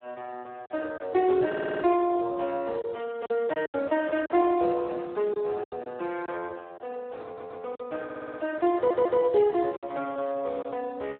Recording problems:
telephone audio; 300 Hz to 2.8 kHz, Speex
lost packets; 5% of the sound replaced, filled with silence
audio stuttering; 4 times, first at 1.5 s

